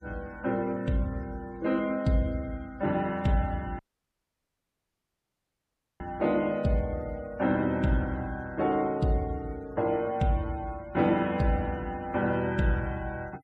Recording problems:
denoising artefacts; signal-to-artefact ratio 25 dB
dropout; at 4 s for 2 s

